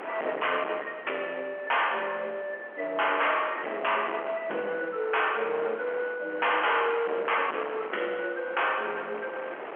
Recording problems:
phone line; 300 Hz to 3.2 kHz, G.711
distorted audio; hard clipping, uneven, signal-to-distortion ratio 7 dB
wind on the microphone; below 1.6 kHz, SNR 13 dB

